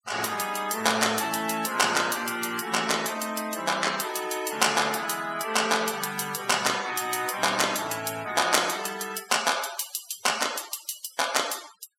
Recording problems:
noise reduction artefacts; signal-to-artefact ratio 14 dB

